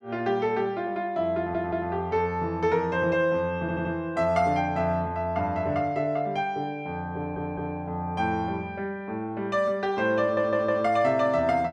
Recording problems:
stutter; 4 times, first at 1.5 s

